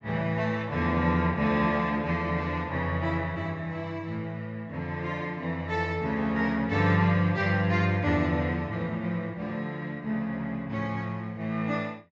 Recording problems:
low-pass filter; nothing above 8 kHz

